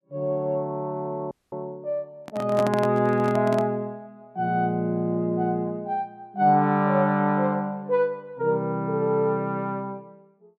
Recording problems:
dropout; at 1.5 s
handling noise; from 2 to 3.5 s; peak -1 dB vs average level

